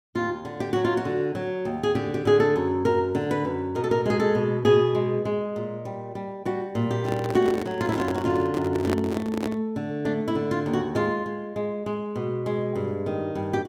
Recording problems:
microphone handling noise; from 7 to 9.5 s; peak +1 dB vs average level

